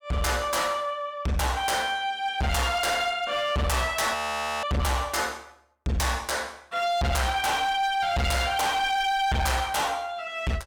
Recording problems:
distortion; hard clipping, signal-to-distortion ratio 6 dB
audio freezing; at 4 s

